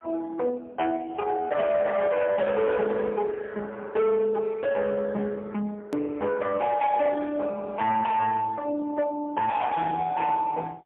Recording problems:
telephone audio; 240 Hz to 3.4 kHz, AMR-NB, then MP3
distortion; hard clipping, signal-to-distortion ratio 11 dB
edit click; at 6 s

